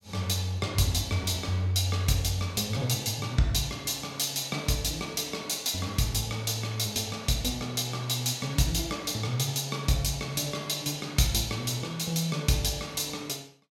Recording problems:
none

